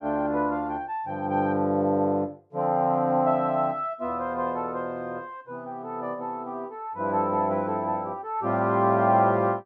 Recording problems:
none

